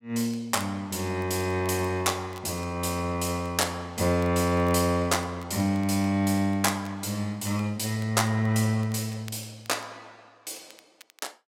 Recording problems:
crackling; vinyl, SNR 27 dB

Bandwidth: 16 kHz